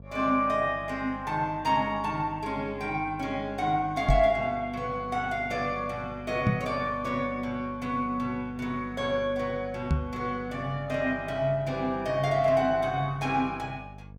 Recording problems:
hum; 50 Hz, harmonics up to 700 Hz, SNR 17 dB
knock on the microphone; at 4 s, at 6.5 s and at 10 s; peak +7 dB vs average level

